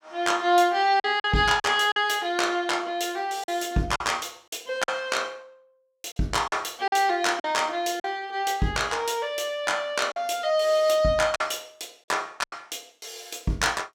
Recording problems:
lost packets; 5% of the sound replaced, filled with silence

